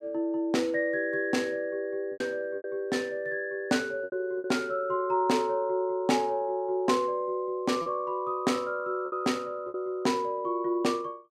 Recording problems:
packet loss; 4% of the sound replaced, filled with repeated pitch periods

